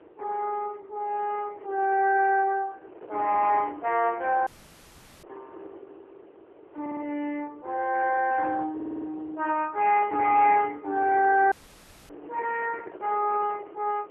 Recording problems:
phone line; 300 Hz to 2.9 kHz, AMR-NB
wind on the microphone; below 620 Hz, SNR 21 dB
audio cutting out; at 4.5 s for 1 s and at 12 s for 0.5 s
audio stuttering; at 7 s and at 9 s

